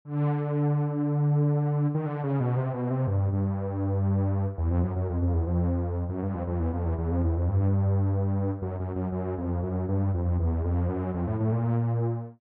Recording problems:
none

